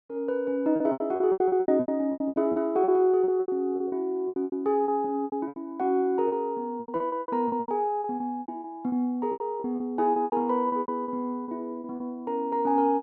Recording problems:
packet loss; 19% of the sound replaced, filled with repeated pitch periods

